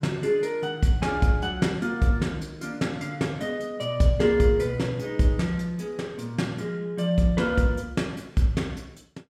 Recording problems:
none

